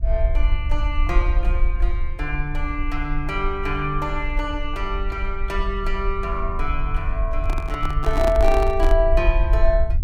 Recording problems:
low-frequency rumble; below 50 Hz, SNR 0 dB
handling noise; from 7.5 to 9 s; peak +2 dB vs average level

